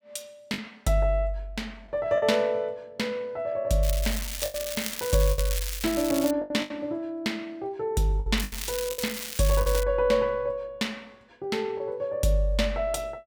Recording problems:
packet loss; 5% of the sound replaced, filled with the last packet
crackle; from 4 to 6.5 s and from 8.5 to 10 s; loose cable, SNR 6 dB

